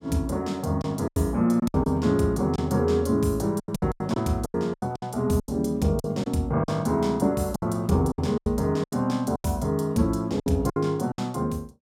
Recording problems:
lost packets; 12% of the sound replaced, filled with silence

